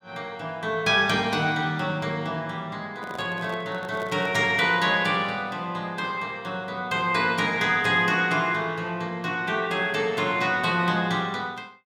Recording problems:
handling noise; from 3 to 4.5 s; peak -9 dB vs average level

